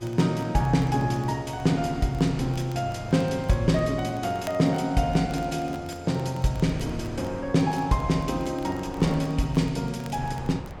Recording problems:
wind on the microphone; below 500 Hz, SNR 18 dB
crackle; vinyl, SNR 27 dB

